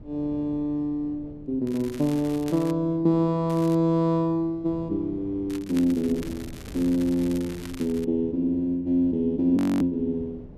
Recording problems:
wind on the microphone; below 290 Hz, SNR 20 dB
crackle; from 1.5 to 2.5 s, at 3.5 s and from 5.5 to 8 s; loose cable, SNR 20 dB
audio freezing; at 9.5 s

